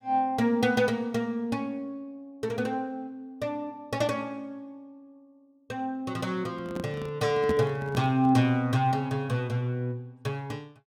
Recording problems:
handling noise; from 6.5 to 8.5 s; peak +2 dB vs average level

